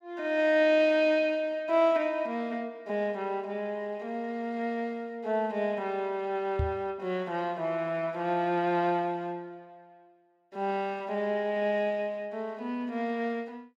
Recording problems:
microphone bump; at 6.5 s; peak +2 dB vs average level

